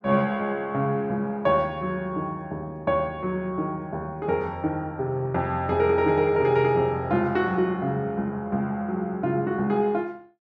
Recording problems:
none

